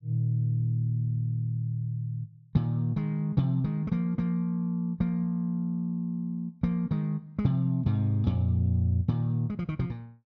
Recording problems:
none

